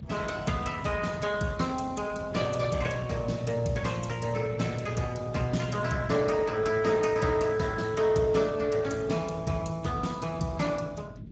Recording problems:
codec artefacts; Speex, log-spectral distance 4 dB, nothing above 7.6 kHz
rumble; below 210 Hz, SNR 14 dB

